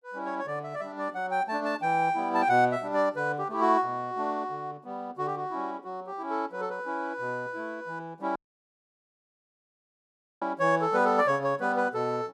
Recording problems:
audio cutting out; at 8.5 s for 2 s

